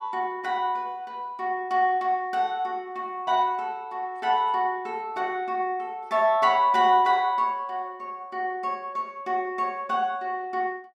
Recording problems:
none

